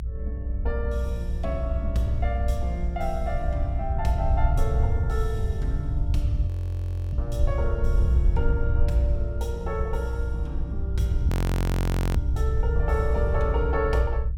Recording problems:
low-frequency rumble; below 86 Hz, SNR -5 dB
frozen audio; at 6.5 s for 0.5 s and at 11 s for 1 s

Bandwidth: 16.5 kHz